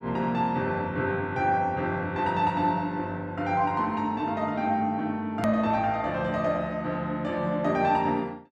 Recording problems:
hard cut with a click; at 5.5 s

